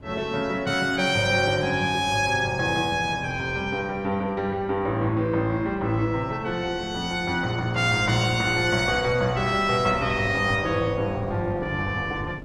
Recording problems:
wind on the microphone; below 330 Hz, SNR 18 dB

